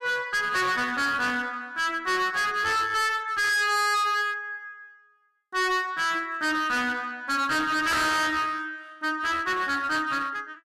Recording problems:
distorted audio; hard clipping, uneven, signal-to-distortion ratio 5 dB

